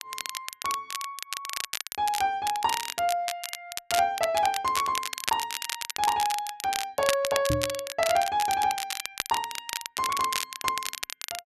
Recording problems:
crackle; vinyl, SNR 5 dB
lost packets; 0.4% of the sound replaced, filled with the last packet
microphone thump; at 7.5 s; peak +3 dB vs average level

